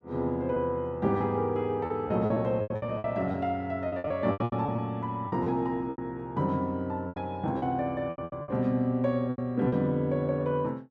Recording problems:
lost packets; 12% of the sound replaced, filled with repeated pitch periods

